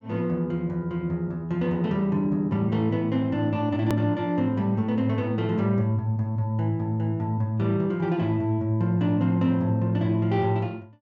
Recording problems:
treble cut off; nothing above 8 kHz
hard cut with a click; at 4 s

